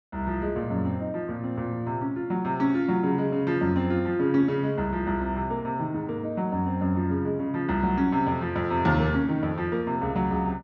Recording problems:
none

